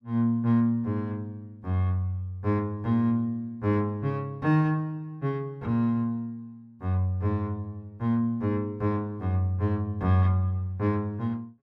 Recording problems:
none

